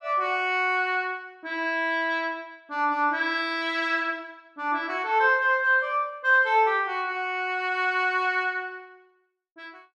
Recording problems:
none

